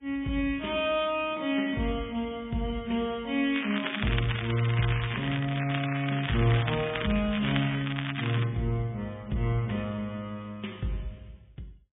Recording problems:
treble cut off; nothing above 3.1 kHz
lossy codec; MP3, log-spectral distance 7 dB
crackling; from 3.5 to 8.5 s; loose cable, SNR 6 dB

